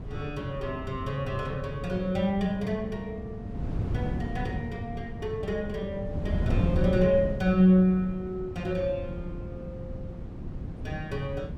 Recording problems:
wind on the microphone; below 190 Hz, SNR 7 dB

